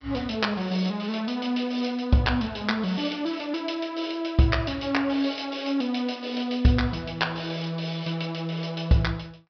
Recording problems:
treble cut off; nothing above 5.5 kHz

